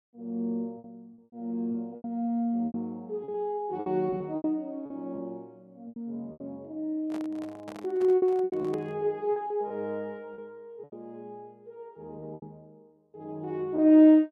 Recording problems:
packet loss; 9% of the sound replaced, filled with repeated pitch periods
handling noise; from 7 to 9 s; peak -10 dB vs average level

